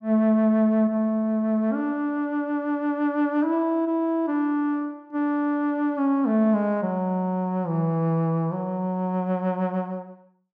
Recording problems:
none

